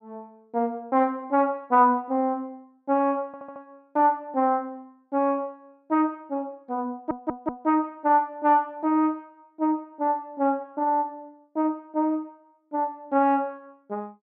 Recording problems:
audio stuttering; at 3.5 s and at 7 s

